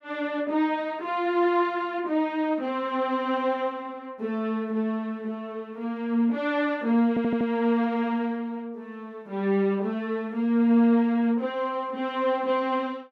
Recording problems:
stutter; at 7 s

